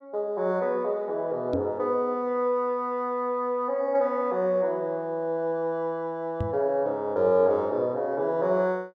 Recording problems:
microphone thump; at 1.5 s and at 6.5 s; peak 0 dB vs average level

